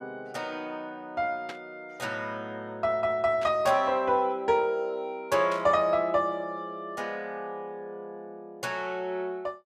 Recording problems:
burst of static; at 1.5 s, at 3.5 s and at 5.5 s; peak -7 dB vs average level

